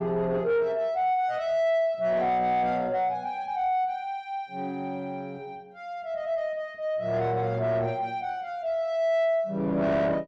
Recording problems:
distortion; soft clipping, signal-to-distortion ratio 10 dB

